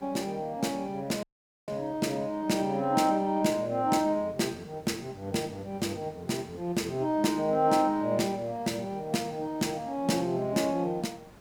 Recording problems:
hiss; slope -6 dB per octave, SNR 24 dB
dropout; at 1 s

